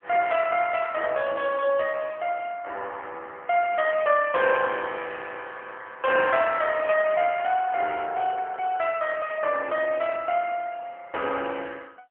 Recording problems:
phone line; 340 Hz to 3.2 kHz, AMR-NB

